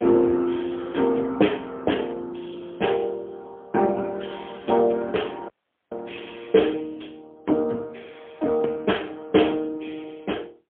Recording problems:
phone line; 220 Hz to 3.4 kHz, AMR-NB, then MP3
dropout; at 5.5 s

